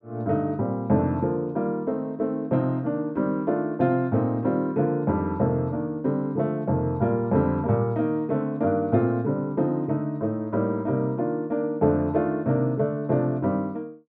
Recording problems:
none

